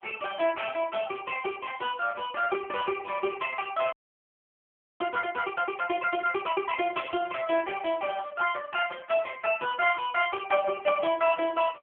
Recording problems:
telephone audio; 240 Hz to 3.3 kHz, AMR-NB
audio freezing; at 4 s for 1 s

